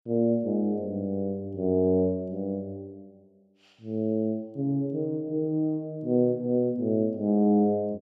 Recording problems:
none

